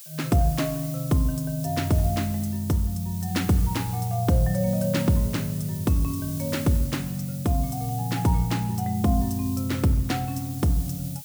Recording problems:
hiss; slope +5 dB per octave, SNR 13 dB

